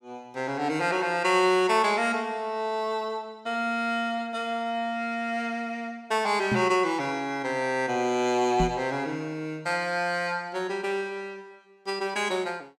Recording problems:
microphone bump; at 6.5 s and at 8.5 s; peak +3 dB vs average level

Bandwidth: 17 kHz